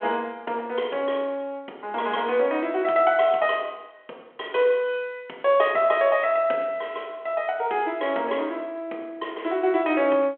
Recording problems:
telephone audio; 280 Hz to 3.4 kHz, G.726

